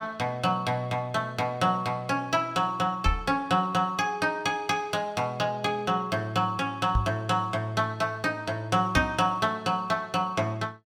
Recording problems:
microphone bump; at 3 s, at 7 s and at 9 s; peak +5 dB vs average level

